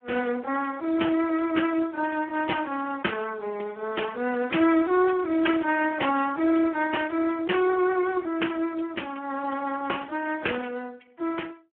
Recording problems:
phone line; 220 Hz to 3.1 kHz, Speex

